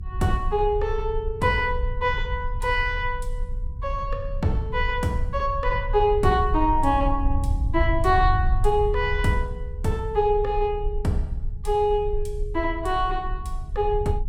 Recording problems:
rumble; below 68 Hz, SNR 5 dB

